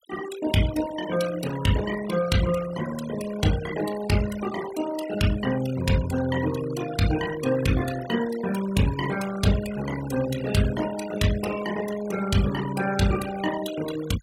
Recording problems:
noise reduction artefacts; signal-to-artefact ratio 12 dB

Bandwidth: 16 kHz